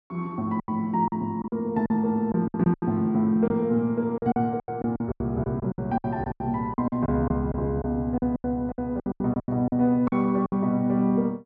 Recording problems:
lost packets; 15% of the sound replaced, filled with silence

